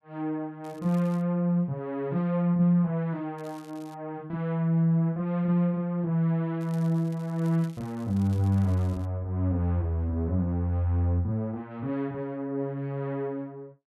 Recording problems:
crackle; at 0.5 s, at 3.5 s and from 6.5 to 9 s; loose cable, SNR 28 dB

